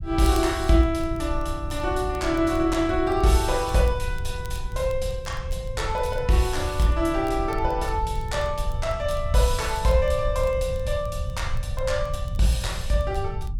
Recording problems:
rumble; below 84 Hz, SNR 7 dB
crackle; vinyl, SNR 27 dB

